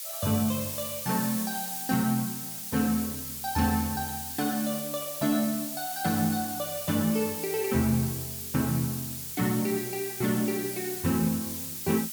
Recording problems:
hiss; slope +5 dB per octave, SNR 4 dB

